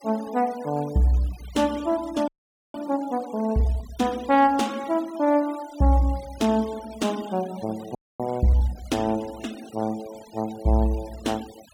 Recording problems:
denoising artefacts; signal-to-artefact ratio 21 dB
audio freezing; at 2.5 s and at 8 s

